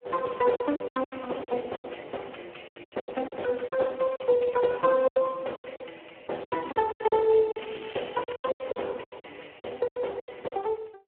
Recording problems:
telephone audio; 300 Hz to 3.3 kHz, Speex
packet loss; 17% of the sound replaced, filled with silence
crackling; at 7.5 s; loose cable, SNR 16 dB

